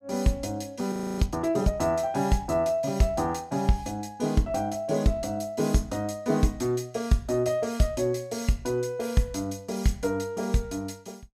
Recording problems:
audio freezing; at 1 s

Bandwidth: 15.5 kHz